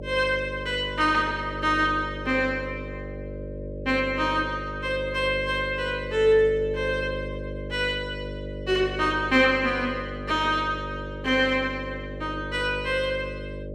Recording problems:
hum; 50 Hz, harmonics up to 600 Hz, SNR 10 dB

